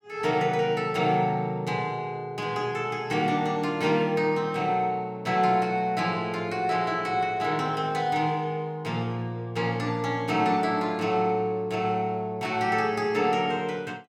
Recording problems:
none

